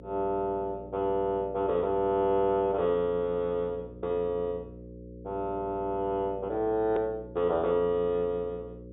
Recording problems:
treble missing; nothing above 4 kHz
mains hum; 60 Hz, harmonics up to 540 Hz, SNR 16 dB
click at an edit; at 7 s

